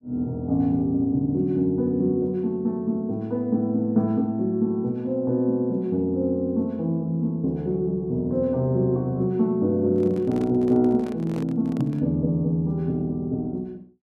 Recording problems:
handling noise; from 10 to 12 s; peak -10 dB vs average level

